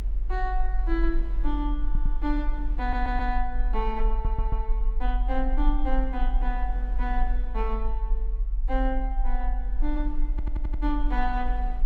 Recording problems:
rumble; below 44 Hz, SNR -3 dB
wind on the microphone; below 440 Hz, SNR 19 dB
audio stuttering; 4 times, first at 2 s

